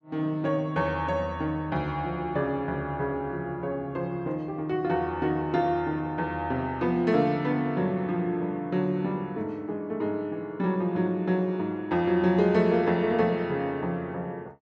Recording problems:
none

